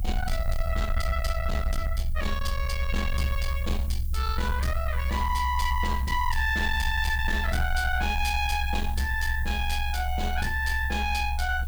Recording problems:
distorted audio; soft clipping, signal-to-distortion ratio 11 dB
background hiss; SNR 19 dB
low-frequency rumble; below 68 Hz, SNR 2 dB

